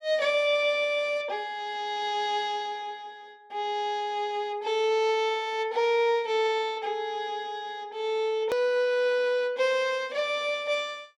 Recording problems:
hard cut with a click; at 8.5 s

